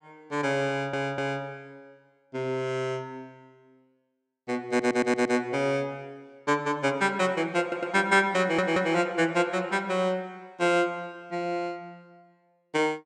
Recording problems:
stutter; 4 times, first at 0.5 s

